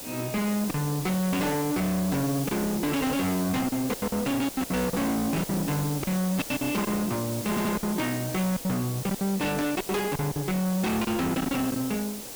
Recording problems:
distortion; hard clipping, uneven, signal-to-distortion ratio 5 dB
background hiss; SNR 8 dB
lost packets; 9% of the sound replaced, filled with silence
stutter; at 7.5 s

